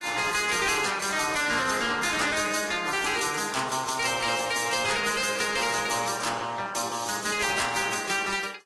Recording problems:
lossy codec; AAC, then AAC, log-spectral distance 10 dB, nothing above 12 kHz
distortion; hard clipping, signal-to-distortion ratio 7 dB

